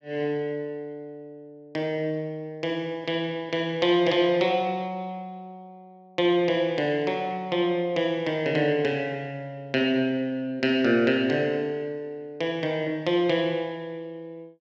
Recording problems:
none

